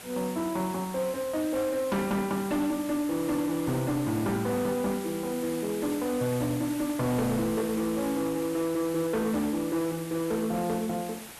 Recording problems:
distorted audio; hard clipping, signal-to-distortion ratio 11 dB
hiss; slope -2 dB per octave, SNR 13 dB

